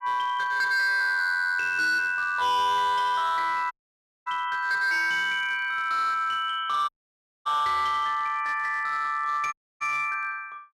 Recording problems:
distorted audio; hard clipping, signal-to-distortion ratio 12 dB
audio cutting out; at 3.5 s for 0.5 s, at 7 s for 0.5 s and at 9.5 s

